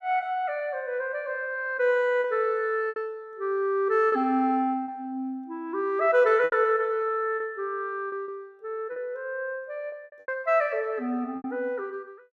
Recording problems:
lost packets; 6% of the sound replaced, filled with repeated pitch periods

